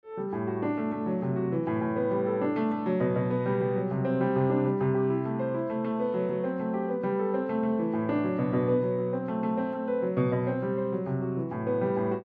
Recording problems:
none

